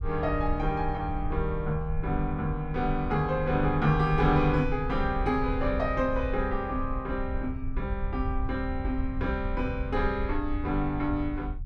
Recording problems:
rumble; below 70 Hz, SNR 6 dB

